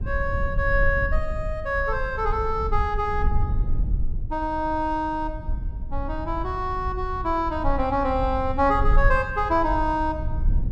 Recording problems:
rumble; below 62 Hz, SNR 5 dB

